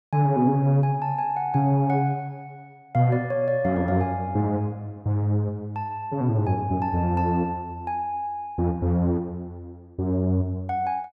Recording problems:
none

